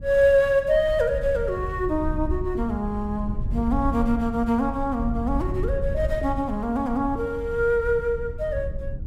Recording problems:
wind noise; below 88 Hz, SNR 8 dB

